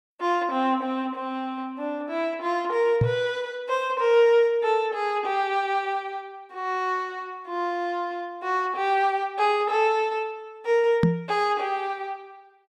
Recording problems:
knock on the microphone; at 3 s and at 11 s; peak +7 dB vs average level

